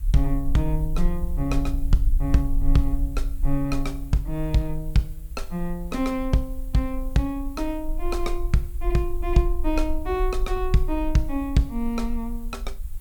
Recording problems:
background hiss; slope -1 dB per octave, SNR 24 dB
low-frequency rumble; below 42 Hz, strongest tone 22 Hz, SNR 5 dB

